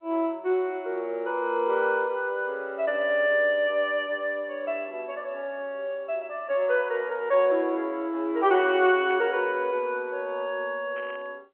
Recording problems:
phone line; 280 Hz to 3.3 kHz, G.711
burst of static; at 9 s and at 11 s; peak -14 dB vs average level

